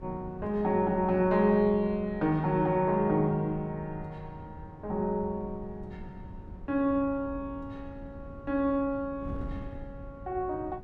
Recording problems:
wind noise; below 180 Hz, SNR 16 dB

